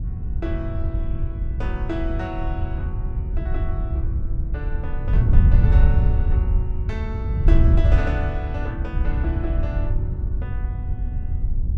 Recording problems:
wind on the microphone; below 84 Hz, SNR -10 dB

